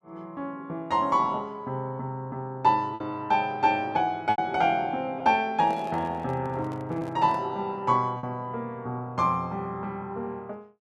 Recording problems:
packet loss; 2% of the sound replaced, filled with repeated pitch periods
microphone handling noise; from 5.5 to 7.5 s; peak -10 dB vs average level

